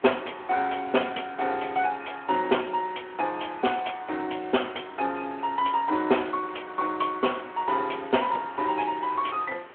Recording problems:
telephone audio; 280 Hz to 3.3 kHz, Speex
background hiss; SNR 28 dB
wind on the microphone; below 2 kHz, SNR 23 dB

